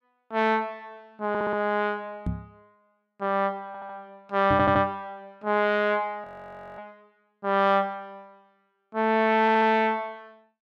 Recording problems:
stutter; 4 times, first at 1.5 s
microphone thump; at 2.5 s and at 4.5 s; peak -1 dB vs average level
frozen audio; at 6 s for 0.5 s

